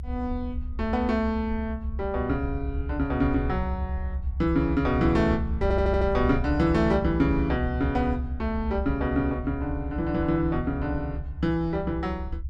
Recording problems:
low-frequency rumble; below 72 Hz, strongest tone 64 Hz, SNR 6 dB
stutter; at 5.5 s

